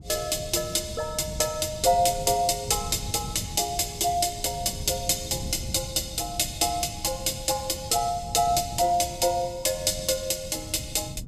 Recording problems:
wind noise; below 160 Hz, SNR 14 dB

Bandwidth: 15 kHz